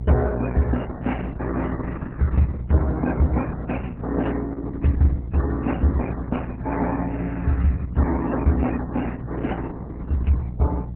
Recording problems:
lossy codec; MP3, then Opus, log-spectral distance 4 dB, nothing above 3.9 kHz
hum; 60 Hz, harmonics up to 420 Hz, SNR 9 dB

